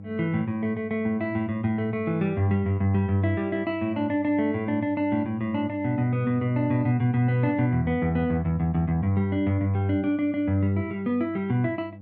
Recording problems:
hum; 50 Hz, harmonics up to 600 Hz, SNR 17 dB

